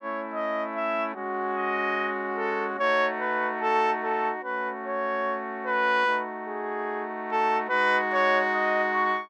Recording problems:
none

